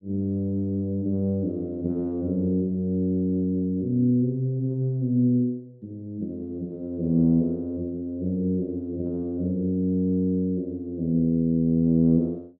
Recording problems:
none

